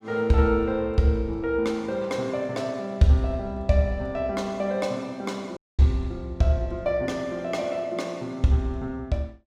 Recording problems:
dropout; at 5.5 s

